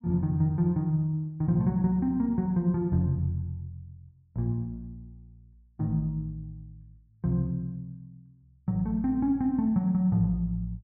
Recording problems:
none

